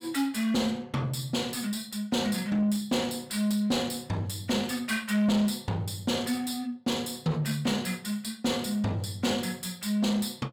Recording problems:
distortion; soft clipping, signal-to-distortion ratio 10 dB

